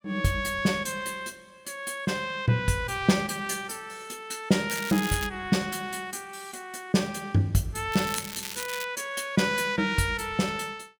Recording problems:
crackle; at 4.5 s and at 8 s; loose cable, SNR 8 dB

